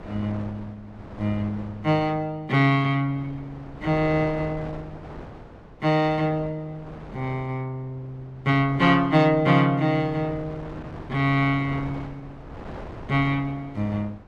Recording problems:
wind noise; below 740 Hz, SNR 17 dB

